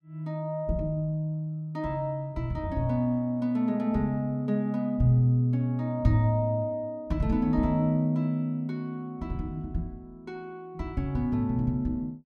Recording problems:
none

